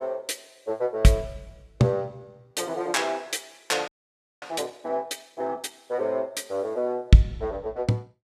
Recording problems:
audio freezing; at 4 s for 0.5 s

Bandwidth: 14.5 kHz